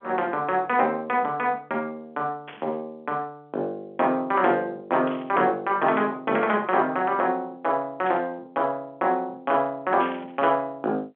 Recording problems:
telephone audio; 170 Hz to 3.5 kHz, G.711
static burst; 4 times, first at 2.5 s; peak -8 dB vs average level

